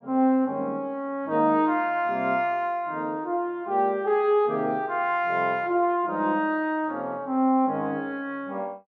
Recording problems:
none

